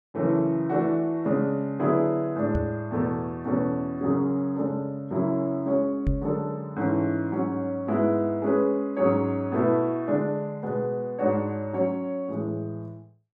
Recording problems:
microphone bump; at 2.5 s and at 6 s; peak +3 dB vs average level

